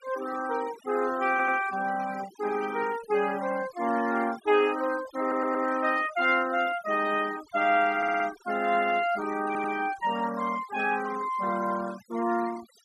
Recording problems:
denoising artefacts; signal-to-artefact ratio 16 dB
stutter; 4 times, first at 1.5 s

